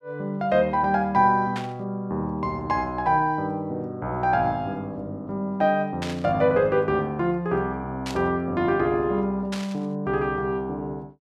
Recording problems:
static burst; 4 times, first at 1.5 s; peak -5 dB vs average level

